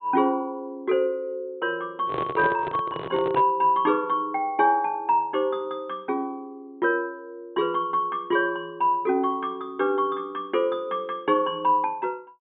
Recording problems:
treble cut off; nothing above 4 kHz
handling noise; from 2 to 3.5 s; peak -1 dB vs average level

